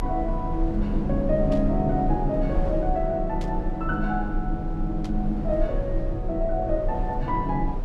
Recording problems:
low-frequency rumble; below 46 Hz, strongest tone 32 Hz, SNR 5 dB
burst of static; at 1.5 s, at 3.5 s and at 5 s; peak -12 dB vs average level

